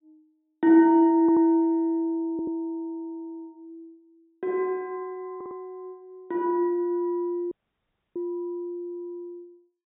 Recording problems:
low-pass filter; nothing above 4 kHz
stutter; at 1 s, at 2.5 s and at 5.5 s
dropout; at 7.5 s for 0.5 s

